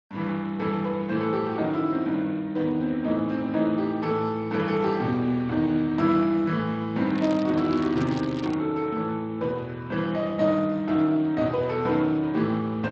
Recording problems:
codec artefacts; Speex, log-spectral distance 3 dB
crackle; from 7 to 8.5 s; loose cable, SNR 18 dB

